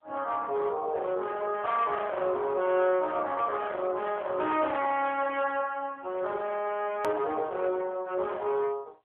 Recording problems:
telephone audio; 320 Hz to 2.7 kHz, AMR-NB
distorted audio; hard clipping, signal-to-distortion ratio 12 dB
edit click; at 7 s

